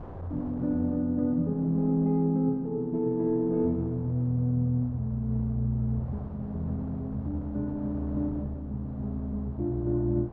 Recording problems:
wind on the microphone; below 600 Hz, SNR 19 dB

